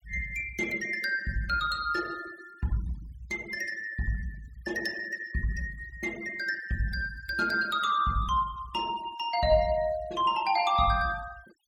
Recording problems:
noise reduction artefacts; signal-to-artefact ratio 20 dB

